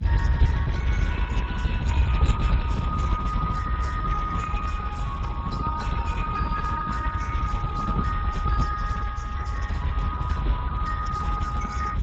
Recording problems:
lossy codec; Vorbis, then Speex, log-spectral distance 2 dB, nothing above 7.6 kHz
rumble; below 120 Hz, SNR -2 dB

